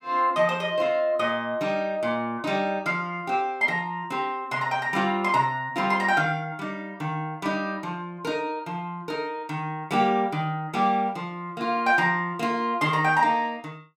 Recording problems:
none

